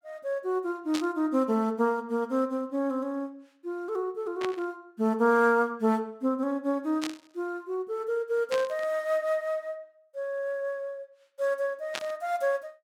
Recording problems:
static burst; 5 times, first at 1 s; peak 0 dB vs average level

